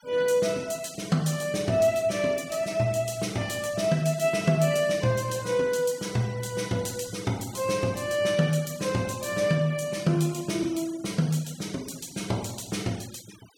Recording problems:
noise reduction artefacts; signal-to-artefact ratio 20 dB

